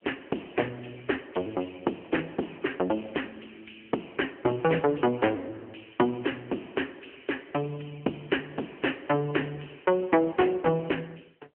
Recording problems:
phone line; 260 Hz to 3.1 kHz, AMR-NB

